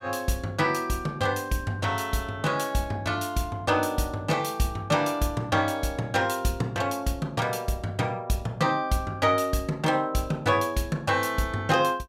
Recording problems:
none

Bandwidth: 16 kHz